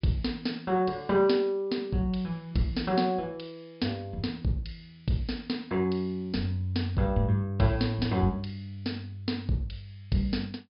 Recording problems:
low-pass filter; nothing above 5.5 kHz

